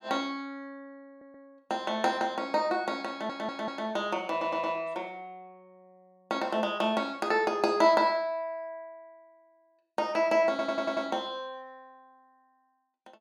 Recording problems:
stutter; 4 times, first at 1 s

